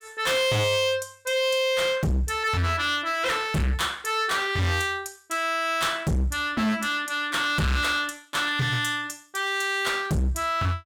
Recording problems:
distortion; hard clipping, uneven, signal-to-distortion ratio 6 dB

